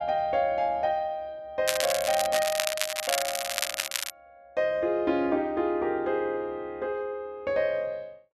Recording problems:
crackle; from 1.5 to 4 s; loose cable, SNR 1 dB

